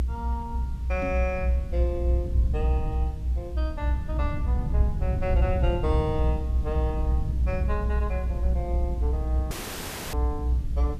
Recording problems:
hiss; slope -2 dB per octave, SNR 24 dB
low-frequency rumble; below 66 Hz, strongest tone 60 Hz, SNR -6 dB
microphone bump; at 1 s; peak +4 dB vs average level
dropout; at 9.5 s for 0.5 s

